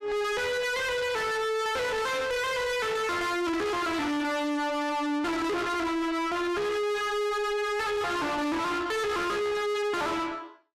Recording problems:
distorted audio; soft clipping, signal-to-distortion ratio 5 dB

